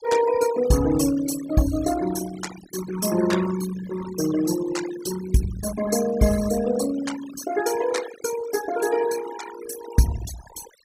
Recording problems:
denoising artefacts; signal-to-artefact ratio 12 dB

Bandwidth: 15.5 kHz